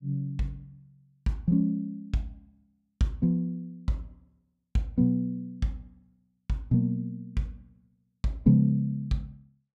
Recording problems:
none

